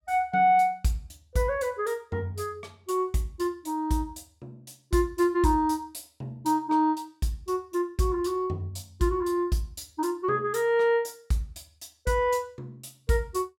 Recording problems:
none

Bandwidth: 17 kHz